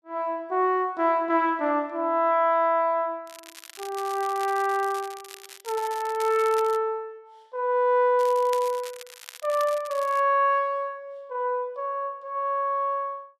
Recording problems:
crackle; from 3.5 to 7 s and from 8 to 10 s; loose cable, SNR 18 dB

